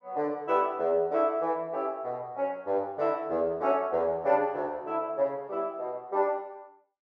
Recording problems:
none

